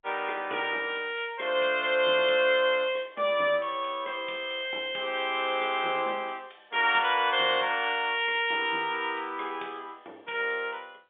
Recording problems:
telephone audio; 260 Hz to 3.6 kHz, G.711

